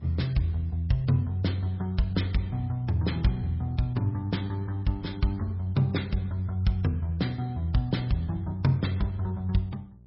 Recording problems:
lossy compression; MP3, log-spectral distance 2 dB, nothing above 5.3 kHz
electrical hum; 60 Hz, harmonics up to 600 Hz, SNR 24 dB

